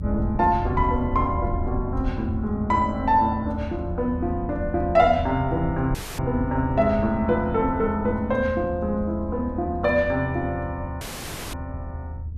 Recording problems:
rumble; below 100 Hz, SNR 8 dB
audio cutting out; at 6 s and at 11 s for 0.5 s

